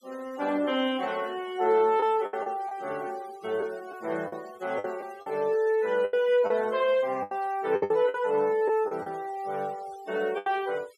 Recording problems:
denoising artefacts; signal-to-artefact ratio 23 dB
lost packets; 7% of the sound replaced, filled with the last packet

